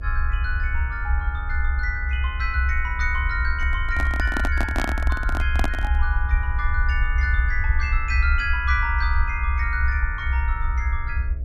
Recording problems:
hum; 60 Hz, harmonics up to 660 Hz, SNR 18 dB
rumble; below 68 Hz, SNR -2 dB
handling noise; from 3.5 to 6 s; peak +4 dB vs average level

